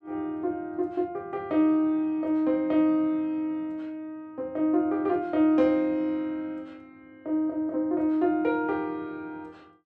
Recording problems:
none

